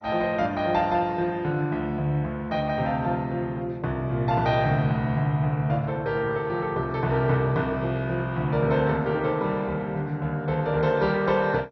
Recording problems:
lossy compression; MP2, log-spectral distance 2 dB, nothing above 5.5 kHz

